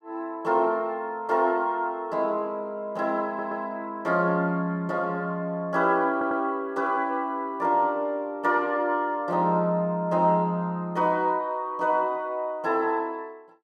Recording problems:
audio stuttering; at 3.5 s and at 6 s

